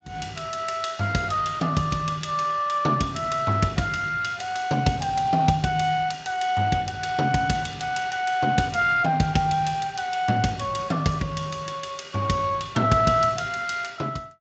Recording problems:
lossy codec; Speex, log-spectral distance 4 dB, nothing above 7.6 kHz

